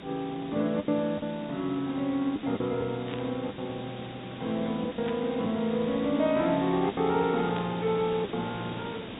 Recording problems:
treble cut off; nothing above 4 kHz
background hiss; SNR 11 dB
lost packets; 6% of the sound replaced, filled with the last packet
burst of static; at 3 s, at 5 s and at 7.5 s; peak -7 dB vs average level

